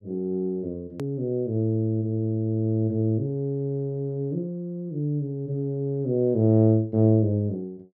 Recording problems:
edit click; at 1 s

